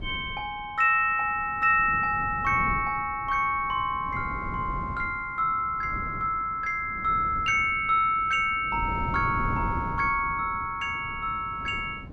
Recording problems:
wind noise; below 230 Hz, SNR 13 dB

